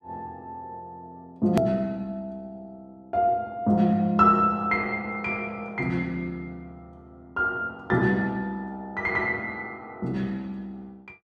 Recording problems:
edit click; at 1.5 s

